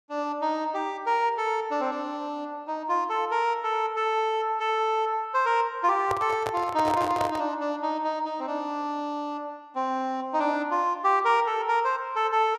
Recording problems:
handling noise; from 6 to 7.5 s; peak -1 dB vs average level

